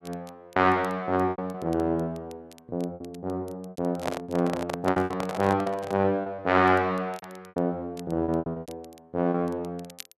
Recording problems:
crackle; vinyl, SNR 27 dB
lost packets; 12% of the sound replaced, filled with repeated pitch periods
handling noise; from 4 to 6 s; peak +2 dB vs average level

